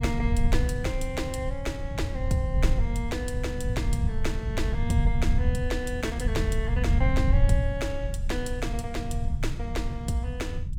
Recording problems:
low-frequency rumble; below 94 Hz, SNR -3 dB

